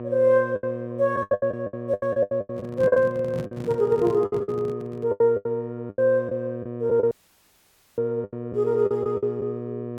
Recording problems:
electrical hum; 60 Hz, harmonics up to 1.2 kHz, SNR 10 dB
lost packets; 16% of the sound replaced, filled with the last packet
handling noise; from 2.5 to 5 s; peak -4 dB vs average level
dropout; at 7 s for 1 s

